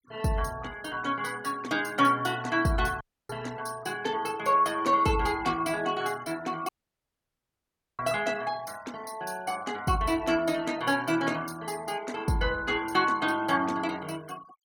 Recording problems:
noise reduction artefacts; signal-to-artefact ratio 21 dB
dropout; at 3 s and at 6.5 s for 1.5 s

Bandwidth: 18 kHz